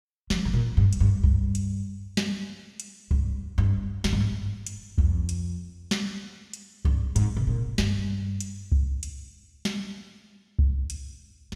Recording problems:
none

